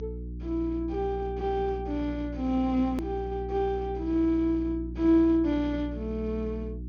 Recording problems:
treble cut off; nothing above 6.5 kHz
hum; 60 Hz, harmonics up to 360 Hz, SNR 10 dB
edit click; at 3 s

